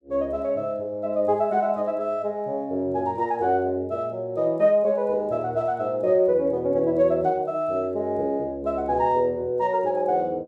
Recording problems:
none

